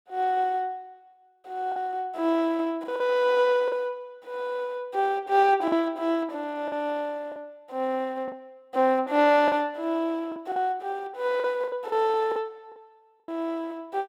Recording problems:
lost packets; 6% of the sound replaced, filled with the last packet

